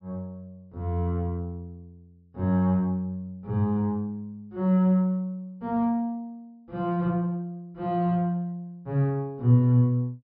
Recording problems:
treble cut off; nothing above 5.5 kHz

